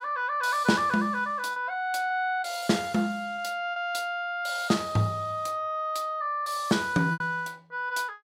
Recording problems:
packet loss; 3% of the sound replaced, filled with repeated pitch periods

